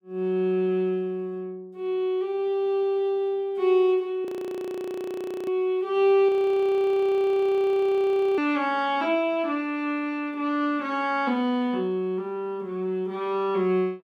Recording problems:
frozen audio; at 4.5 s for 1 s and at 6.5 s for 2 s

